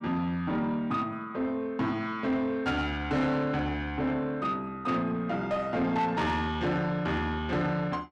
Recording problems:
distorted audio; soft clipping, signal-to-distortion ratio 11 dB

